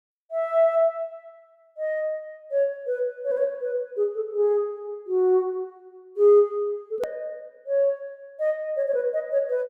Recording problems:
edit click; at 7 s

